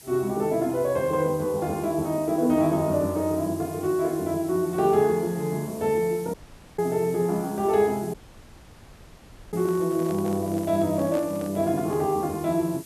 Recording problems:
hiss; SNR 19 dB
dropout; at 6.5 s and at 8 s for 1.5 s
handling noise; from 9.5 to 12 s; peak -6 dB vs average level

